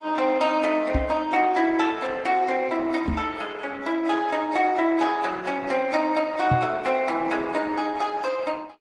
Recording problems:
lossy codec; AAC, then Opus, log-spectral distance 3 dB, nothing above 10.7 kHz
microphone bump; at 1 s, at 3 s and at 6.5 s; peak +4 dB vs average level

